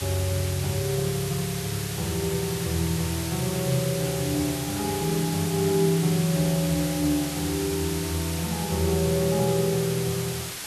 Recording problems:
hiss; slope 0 dB per octave, SNR 6 dB

